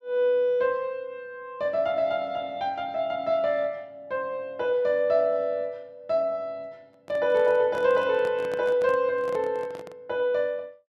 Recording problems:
microphone handling noise; from 7 to 10 s; peak -9 dB vs average level

